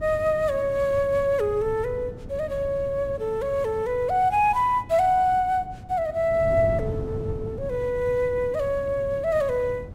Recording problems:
wind noise; below 210 Hz, SNR 13 dB

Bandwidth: 16 kHz